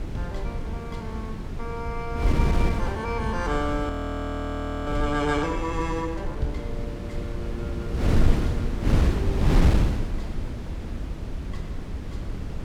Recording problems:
wind on the microphone; below 150 Hz, SNR -3 dB
frozen audio; at 4 s for 1 s

